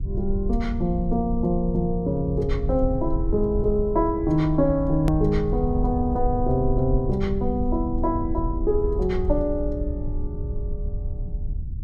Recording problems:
low-frequency rumble; below 74 Hz, SNR 5 dB
edit click; at 5 s

